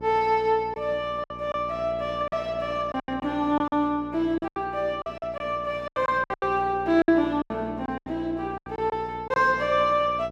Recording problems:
hum; 60 Hz, harmonics up to 1.1 kHz, SNR 17 dB
lost packets; 11% of the sound replaced, filled with silence

